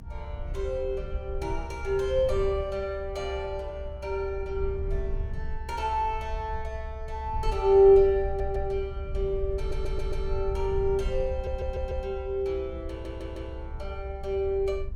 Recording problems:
rumble; below 68 Hz, SNR 8 dB
stutter; 4 times, first at 8 s

